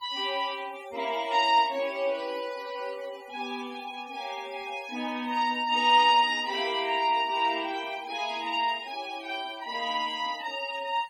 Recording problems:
noise reduction artefacts; signal-to-artefact ratio 20 dB

